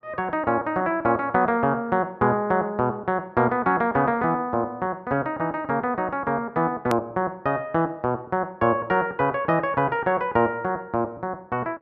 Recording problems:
click at an edit; at 7 s

